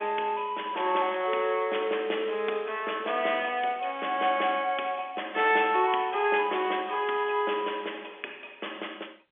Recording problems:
telephone audio; 280 Hz to 3.5 kHz, G.711

